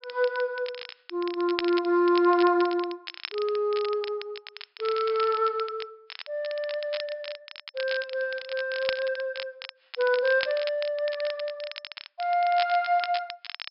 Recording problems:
treble cut off; nothing above 5.3 kHz
crackling; vinyl, SNR 13 dB

